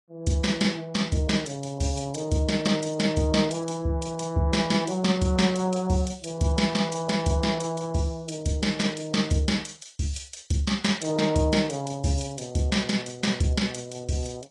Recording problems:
codec artefacts; AAC, log-spectral distance 4 dB

